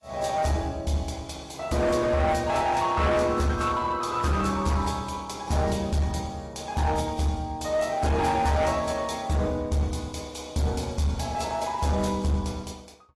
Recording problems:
lossy codec; AAC, log-spectral distance 3 dB, nothing above 11.6 kHz
distortion; hard clipping, uneven, signal-to-distortion ratio 11 dB

